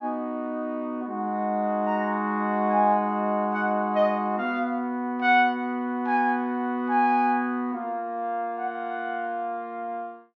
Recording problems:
none

